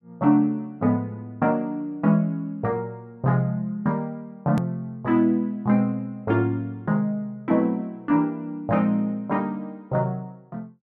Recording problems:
hard cut with a click; at 4.5 s

